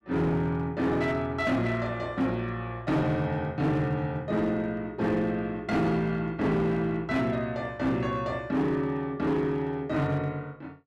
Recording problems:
distorted audio; hard clipping, signal-to-distortion ratio 11 dB

